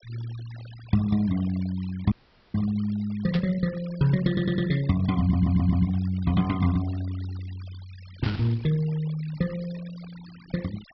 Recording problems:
low-pass filter; nothing above 5.4 kHz
denoising artefacts; signal-to-artefact ratio 20 dB
audio cutting out; at 2 s
burst of static; at 3.5 s and at 8 s; peak -6 dB vs average level
audio stuttering; at 4.5 s and at 5 s

